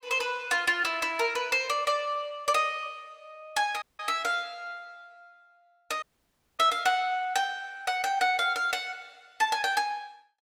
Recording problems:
audio cutting out; at 4 s and at 6 s for 0.5 s

